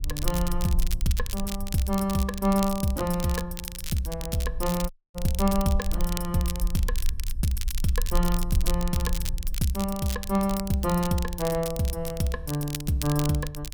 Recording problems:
rumble; below 48 Hz, strongest tone 24 Hz, SNR 7 dB
crackle; vinyl, SNR 10 dB
audio cutting out; at 5 s

